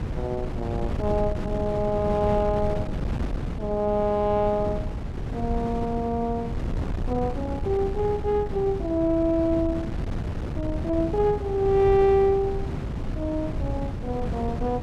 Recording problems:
wind on the microphone; below 210 Hz, SNR 6 dB

